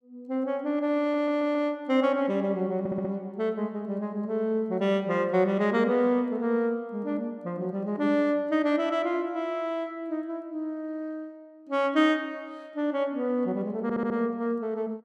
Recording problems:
audio stuttering; at 1 s, at 3 s and at 14 s

